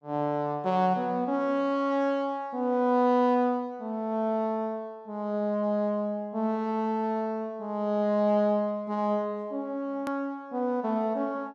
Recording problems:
click at an edit; at 10 s

